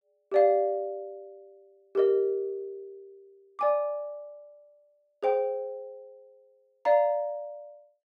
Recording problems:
none

